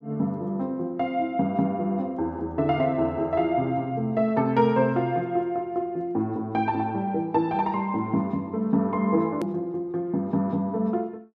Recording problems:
hard cut with a click; at 9.5 s

